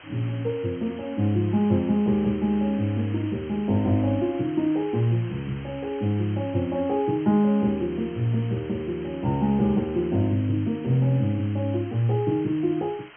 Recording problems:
treble missing; nothing above 3.2 kHz
hiss; SNR 21 dB

